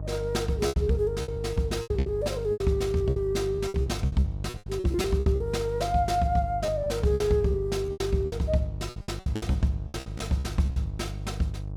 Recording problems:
hum; 50 Hz, harmonics up to 650 Hz, SNR 8 dB
lost packets; 15% of the sound replaced, filled with repeated pitch periods

